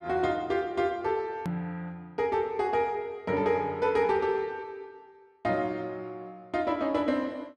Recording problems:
click at an edit; at 1.5 s

